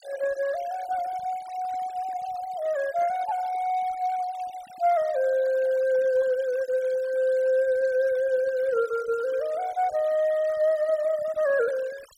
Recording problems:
denoising artefacts; signal-to-artefact ratio 22 dB

